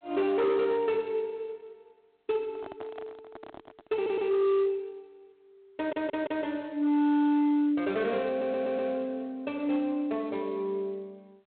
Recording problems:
telephone audio; 130 Hz to 3.7 kHz, G.726
distortion; hard clipping, signal-to-distortion ratio 11 dB
handling noise; from 2.5 to 4 s; peak -11 dB vs average level
audio stuttering; at 4 s, at 6 s and at 8.5 s

